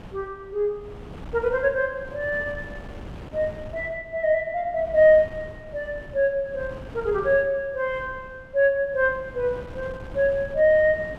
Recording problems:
wind on the microphone; below 440 Hz, SNR 18 dB

